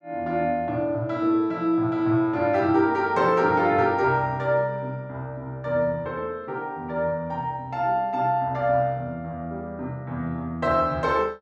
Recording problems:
none

